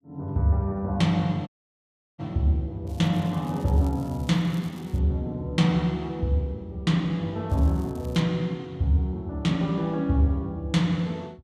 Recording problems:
dropout; at 1.5 s for 0.5 s
crackling; from 3 to 5 s and at 7.5 s; loose cable, SNR 27 dB

